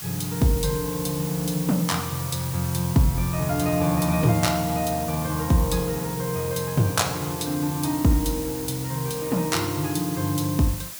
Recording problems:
background hiss; slope +1 dB per octave, SNR 9 dB

